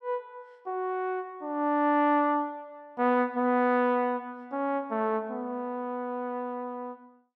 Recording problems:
none

